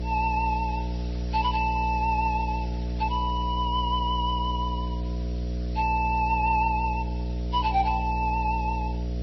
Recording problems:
codec artefacts; Vorbis, then MP3, log-spectral distance 3 dB, nothing above 5.3 kHz
hum; 60 Hz, harmonics up to 660 Hz, SNR 4 dB
background hiss; slope +2 dB per octave, SNR 23 dB

